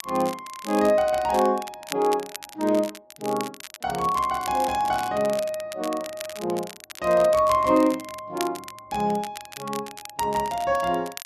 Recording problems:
crackle; vinyl, SNR 15 dB

